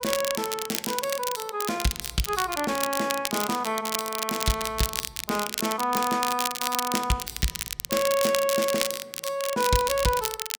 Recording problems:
crackling; vinyl, SNR 3 dB

